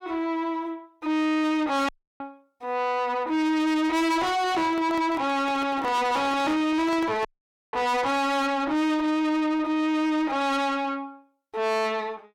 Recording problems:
distortion; soft clipping, signal-to-distortion ratio 7 dB
audio cutting out; at 2 s and at 7.5 s
handling noise; from 4.5 to 7.5 s; peak -6 dB vs average level

